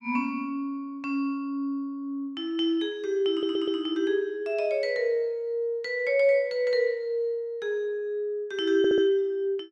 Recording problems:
audio stuttering; at 3.5 s and at 9 s

